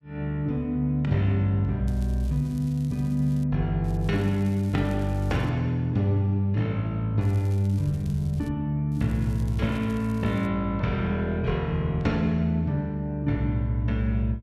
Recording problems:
crackling; 4 times, first at 2 s; loose cable, SNR 27 dB

